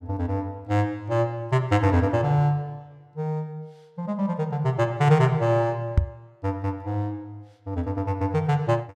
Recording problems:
microphone bump; at 6 s; peak +9 dB vs average level

